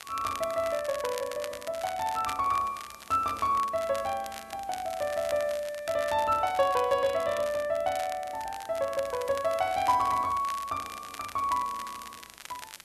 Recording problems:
background hiss; SNR 26 dB
crackle; vinyl, SNR 14 dB

